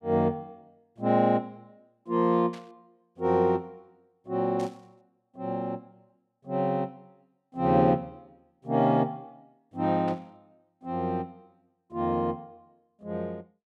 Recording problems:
static burst; at 2.5 s, at 4.5 s and at 10 s; peak -14 dB vs average level

